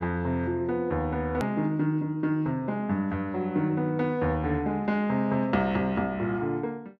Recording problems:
click at an edit; at 1.5 s

